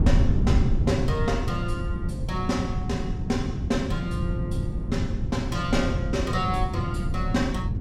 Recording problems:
wind noise; below 140 Hz, SNR -1 dB

